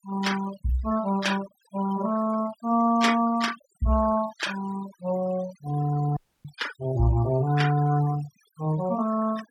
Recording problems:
denoising artefacts; signal-to-artefact ratio 15 dB
audio cutting out; at 6 s

